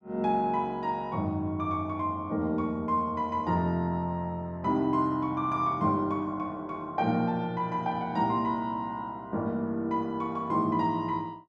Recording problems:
none

